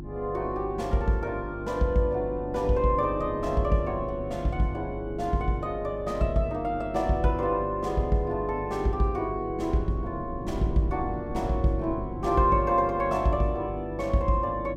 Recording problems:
electrical hum; 50 Hz, harmonics up to 350 Hz, SNR 11 dB
wind noise; below 220 Hz, SNR 15 dB

